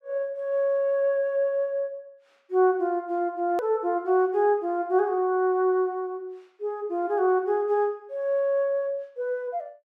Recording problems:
click at an edit; at 3.5 s

